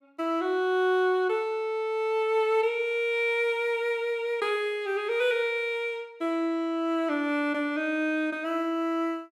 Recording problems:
none

